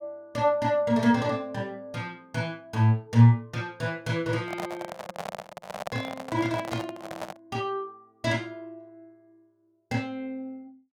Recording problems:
handling noise; from 4.5 to 7.5 s; peak -2 dB vs average level

